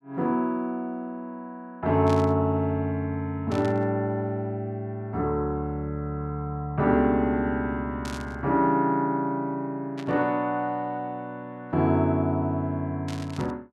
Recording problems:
burst of static; 5 times, first at 2 s; peak -9 dB vs average level

